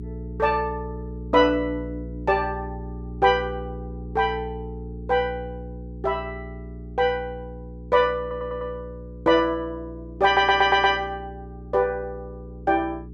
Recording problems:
hum; 60 Hz, harmonics up to 420 Hz, SNR 14 dB
stutter; at 8 s and at 10 s

